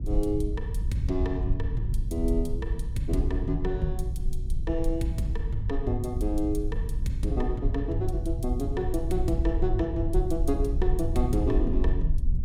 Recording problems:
low-frequency rumble; below 64 Hz, SNR 0 dB

